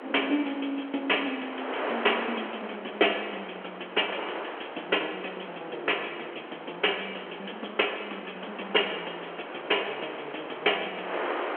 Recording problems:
phone line; 280 Hz to 3.4 kHz, G.726
wind on the microphone; below 1.7 kHz, SNR 8 dB

